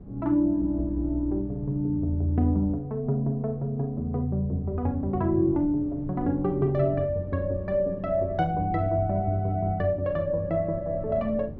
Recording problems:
wind noise; below 230 Hz, SNR 15 dB

